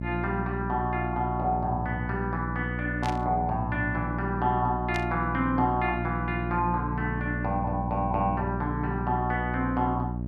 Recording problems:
hum; 60 Hz, harmonics up to 660 Hz, SNR 3 dB
burst of static; at 3 s and at 5 s; peak -4 dB vs average level

